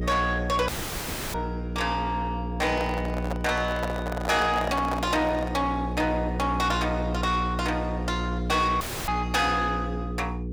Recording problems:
distorted audio; soft clipping, signal-to-distortion ratio 12 dB
mains hum; 60 Hz, harmonics up to 480 Hz, SNR 5 dB
dropout; at 0.5 s for 0.5 s and at 9 s
handling noise; from 2.5 to 5.5 s; peak 0 dB vs average level

